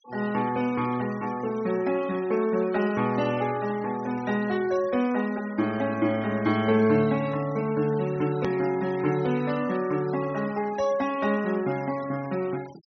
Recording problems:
treble cut off; nothing above 6.1 kHz
denoising artefacts; signal-to-artefact ratio 19 dB
edit click; at 8.5 s

